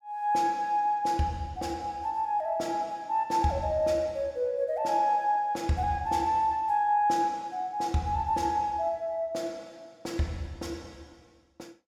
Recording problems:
none

